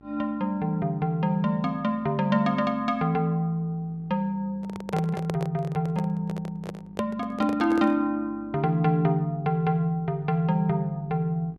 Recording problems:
hum; 50 Hz, harmonics up to 1.2 kHz, SNR 27 dB
handling noise; from 4.5 to 8 s; peak -2 dB vs average level

